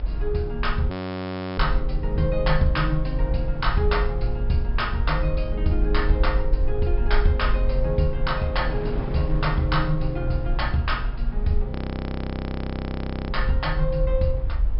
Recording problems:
low-pass filter; nothing above 5.3 kHz
low-frequency rumble; below 48 Hz, SNR 2 dB
wind noise; below 640 Hz, SNR 15 dB
frozen audio; at 1 s for 0.5 s and at 12 s for 1.5 s

